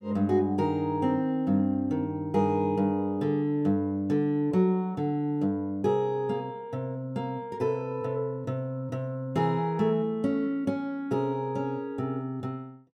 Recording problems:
none

